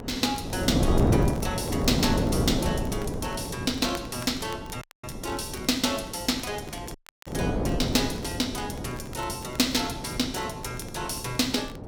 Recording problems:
electrical hum; 50 Hz, harmonics up to 1.4 kHz, SNR 26 dB
wind noise; below 400 Hz, SNR 2 dB
crackle; vinyl, SNR 22 dB
audio cutting out; at 5 s and at 7 s

